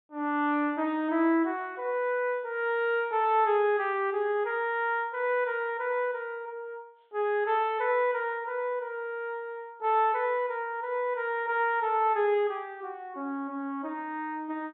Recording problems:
treble missing; nothing above 4 kHz

